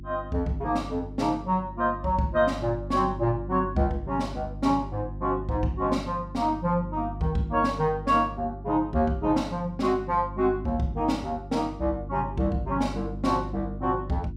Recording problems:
hum; 50 Hz, harmonics up to 350 Hz, SNR 11 dB

